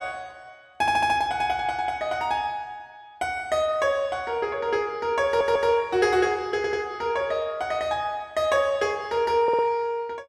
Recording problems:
audio stuttering; 4 times, first at 1 s

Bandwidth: 14.5 kHz